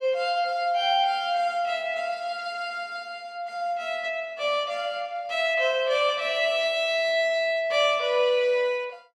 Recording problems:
none

